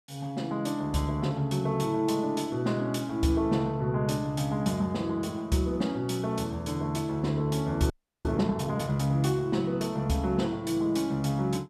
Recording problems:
frozen audio; at 8 s

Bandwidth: 14.5 kHz